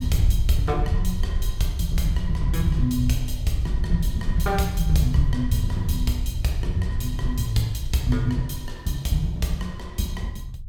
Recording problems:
low-frequency rumble; below 80 Hz, SNR 4 dB

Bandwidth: 17 kHz